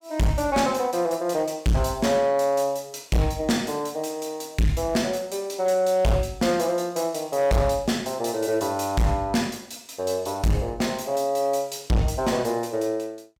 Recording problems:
distorted audio; hard clipping, signal-to-distortion ratio 7 dB

